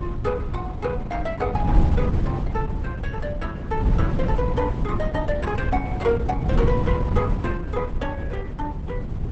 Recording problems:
lossy codec; Opus, log-spectral distance 2 dB, nothing above 8.2 kHz
wind noise; below 150 Hz, SNR -2 dB

